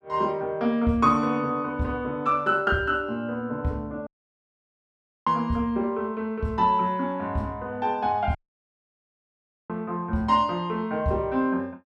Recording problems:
dropout; at 4 s for 1 s and at 8.5 s for 1.5 s

